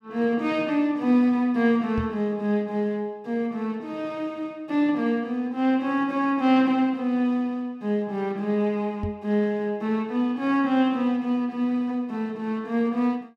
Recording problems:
microphone thump; at 2 s and at 9 s; peak -2 dB vs average level

